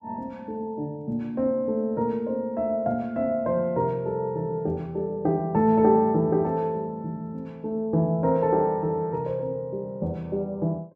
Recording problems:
none

